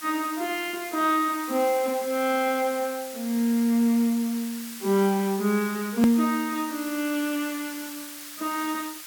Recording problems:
background hiss; SNR 12 dB
hard cut with a click; at 6 s

